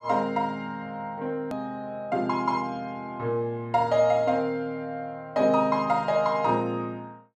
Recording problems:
edit click; at 1.5 s

